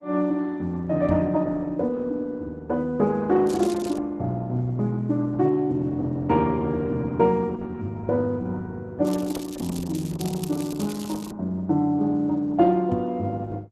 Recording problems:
lossy compression; Opus, log-spectral distance 3 dB
microphone thump; at 1 s and at 13 s; peak +2 dB vs average level
crackle; at 3.5 s and from 9 to 11 s; loose cable, SNR 16 dB

